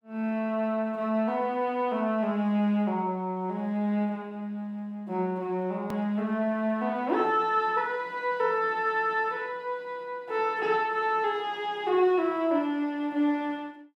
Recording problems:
edit click; at 6 s

